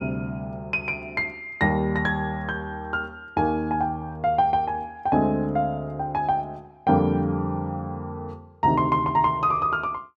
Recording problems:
none

